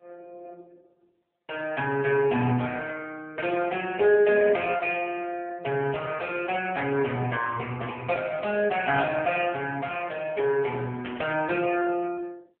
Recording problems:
phone line; 190 Hz to 3.3 kHz, AMR-NB
static burst; at 9 s and at 11 s; peak -7 dB vs average level

